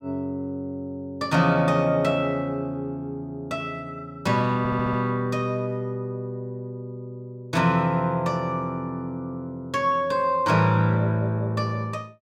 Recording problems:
audio stuttering; at 4.5 s

